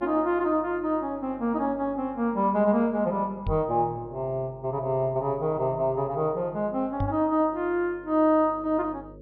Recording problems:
treble missing; nothing above 5.5 kHz
hum; 50 Hz, harmonics up to 550 Hz, SNR 24 dB
knock on the microphone; at 3.5 s and at 7 s; peak -1 dB vs average level

